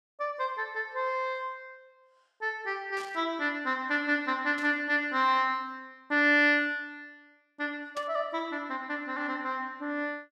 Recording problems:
burst of static; at 3 s, at 4.5 s and at 8 s; peak -10 dB vs average level

